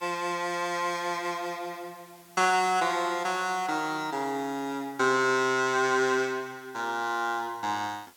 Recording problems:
hiss; slope -1 dB per octave, SNR 27 dB

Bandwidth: 17 kHz